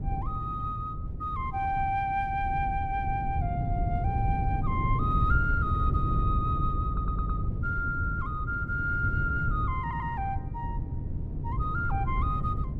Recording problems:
wind noise; below 130 Hz, SNR 0 dB
audio stuttering; at 7 s and at 10 s

